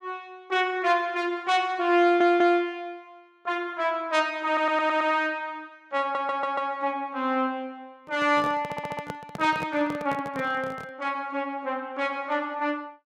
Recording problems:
stutter; 4 times, first at 2 s
microphone handling noise; from 8 to 11 s; peak -6 dB vs average level

